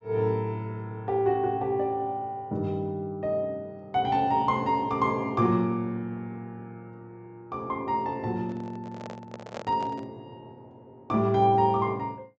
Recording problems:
treble cut off; nothing above 8 kHz
microphone handling noise; from 8.5 to 10 s; peak -6 dB vs average level

